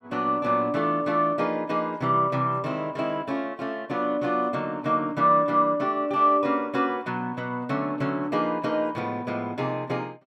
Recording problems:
none

